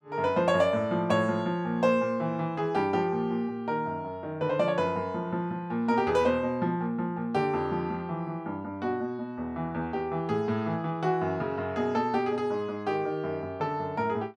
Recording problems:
none

